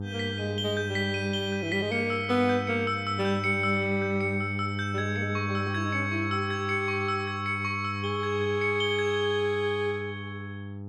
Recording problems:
hum; 50 Hz, harmonics up to 800 Hz, SNR 7 dB

